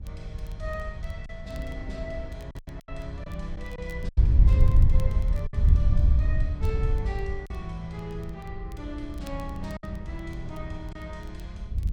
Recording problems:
rumble; below 66 Hz, SNR 9 dB
wind on the microphone; below 80 Hz, SNR -12 dB
crackle; vinyl, SNR 21 dB
lost packets; 5% of the sound replaced, filled with silence

